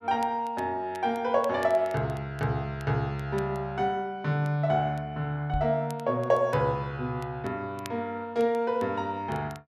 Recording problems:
crackle; vinyl, SNR 25 dB
microphone bump; at 5.5 s; peak -1 dB vs average level

